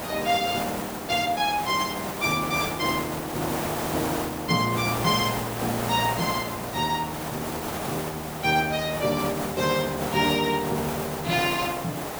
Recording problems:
hiss; SNR 4 dB

